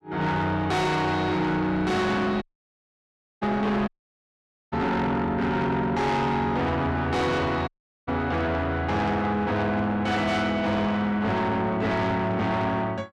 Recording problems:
distorted audio; soft clipping, signal-to-distortion ratio 8 dB
audio cutting out; at 2.5 s for 1 s, at 4 s for 1 s and at 7.5 s

